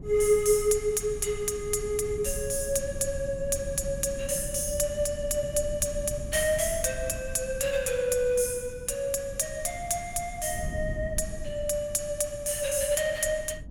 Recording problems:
wind noise; below 130 Hz, SNR 13 dB

